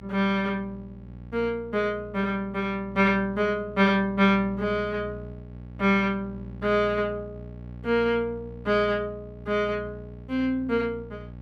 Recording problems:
mains hum; 60 Hz, harmonics up to 840 Hz, SNR 16 dB

